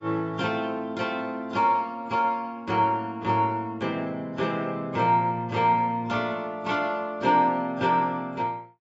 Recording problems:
lossy codec; AAC, log-spectral distance 2 dB, nothing above 7.6 kHz

